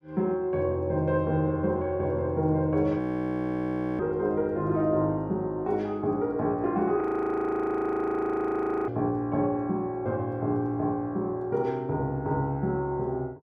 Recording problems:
frozen audio; at 3 s for 1 s and at 7 s for 2 s

